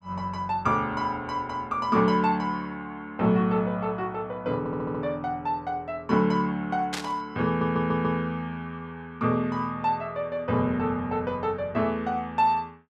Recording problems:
stutter; at 4.5 s and at 7.5 s
burst of static; at 7 s; peak 0 dB vs average level

